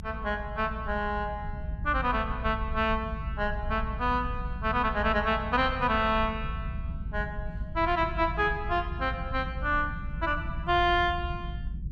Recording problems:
low-frequency rumble; below 100 Hz, SNR 8 dB

